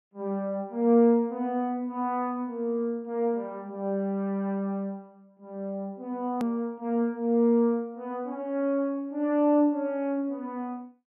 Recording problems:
treble cut off; nothing above 3.2 kHz
click at an edit; at 6.5 s

